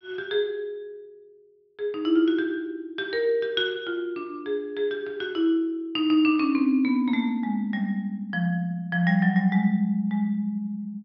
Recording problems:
treble missing; nothing above 5.5 kHz

